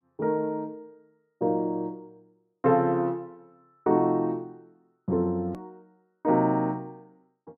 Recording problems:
edit click; at 5.5 s

